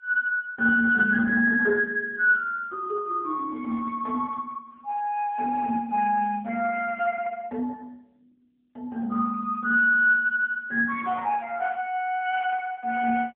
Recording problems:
telephone audio; 260 Hz to 2.9 kHz, AMR-NB

